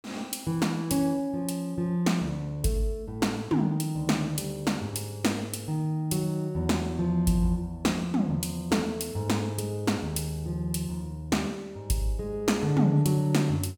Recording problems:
none

